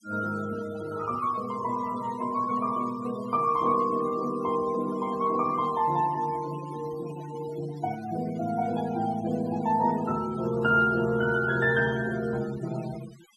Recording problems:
noise reduction artefacts; signal-to-artefact ratio 18 dB

